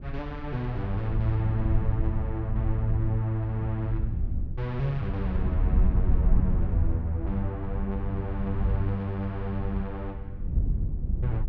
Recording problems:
low-pass filter; nothing above 7.4 kHz
wind on the microphone; below 86 Hz, SNR -1 dB

